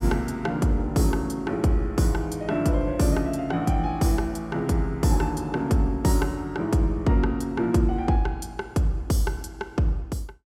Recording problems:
none

